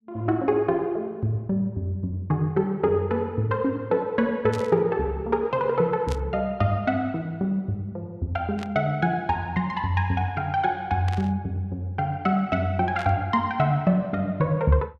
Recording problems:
burst of static; 5 times, first at 4.5 s; peak -9 dB vs average level

